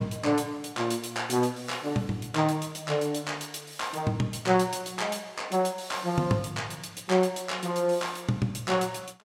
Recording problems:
none

